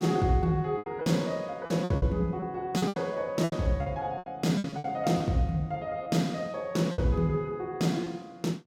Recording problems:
lost packets; 10% of the sound replaced, filled with repeated pitch periods

